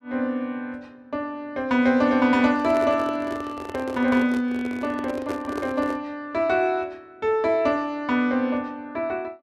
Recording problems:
handling noise; from 2.5 to 6 s; peak -4 dB vs average level

